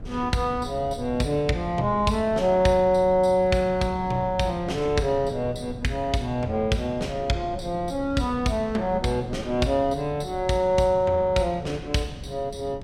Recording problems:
wind on the microphone; below 210 Hz, SNR 15 dB

